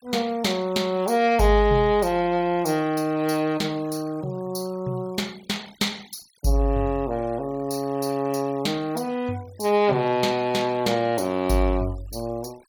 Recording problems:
noise reduction artefacts; signal-to-artefact ratio 24 dB

